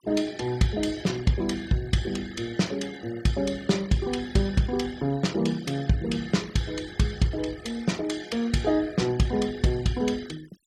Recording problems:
denoising artefacts; signal-to-artefact ratio 20 dB

